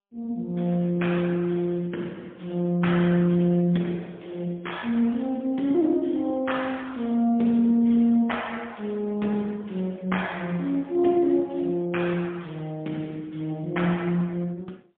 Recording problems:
telephone audio; 130 Hz to 3.5 kHz, AMR-NB, then MP3

